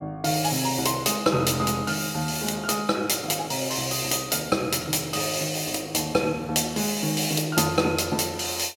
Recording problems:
none

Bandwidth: 17 kHz